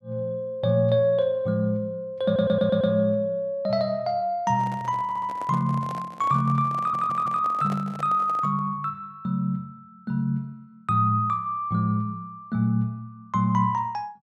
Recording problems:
stutter; at 2.5 s, at 5 s and at 7 s
microphone handling noise; from 4.5 to 8.5 s; peak -8 dB vs average level

